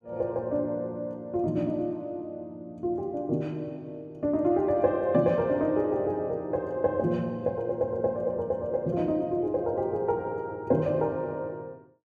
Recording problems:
none

